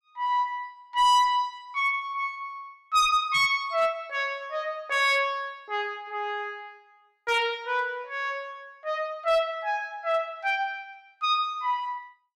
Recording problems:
distorted audio; hard clipping, signal-to-distortion ratio 10 dB

